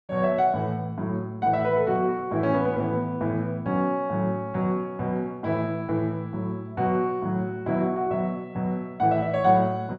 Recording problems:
none

